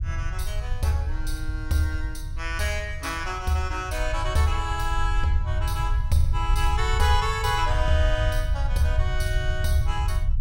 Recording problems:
low-frequency rumble; below 78 Hz, SNR 2 dB

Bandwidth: 16 kHz